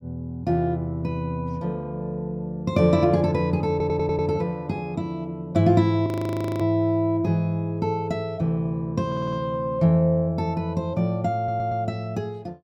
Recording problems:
stutter; at 3.5 s, at 9 s and at 11 s
frozen audio; at 6 s for 0.5 s

